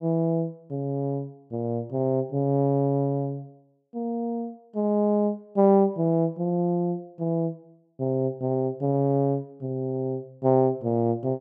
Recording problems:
none

